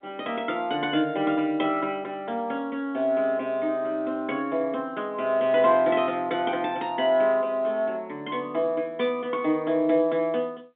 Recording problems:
phone line; 220 Hz to 3.7 kHz, G.711

